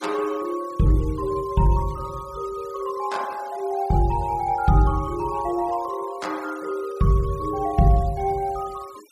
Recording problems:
denoising artefacts; signal-to-artefact ratio 23 dB

